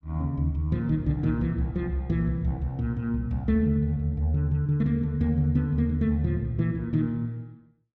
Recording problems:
none

